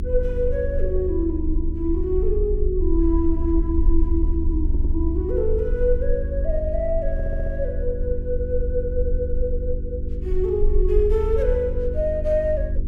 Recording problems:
hum; 50 Hz, harmonics up to 400 Hz, SNR 9 dB
low-frequency rumble; below 68 Hz, strongest tone 22 Hz, SNR 1 dB
audio stuttering; at 4.5 s and at 7 s

